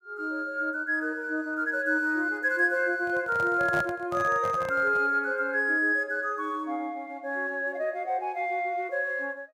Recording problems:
handling noise; from 3 to 5 s; peak -3 dB vs average level

